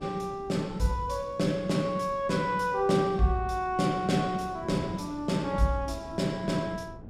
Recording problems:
wind noise; below 300 Hz, SNR 18 dB

